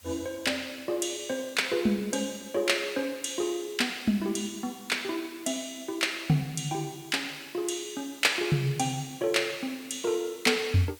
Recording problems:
hiss; slope +1 dB per octave, SNR 21 dB

